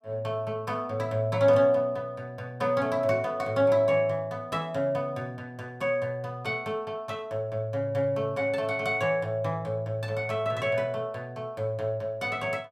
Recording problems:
none

